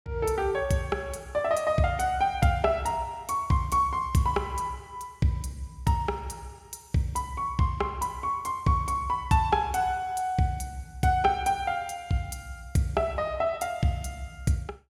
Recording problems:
none

